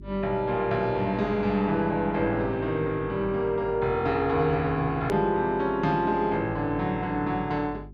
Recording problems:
hum; 50 Hz, harmonics up to 400 Hz, SNR 18 dB
edit click; at 5 s

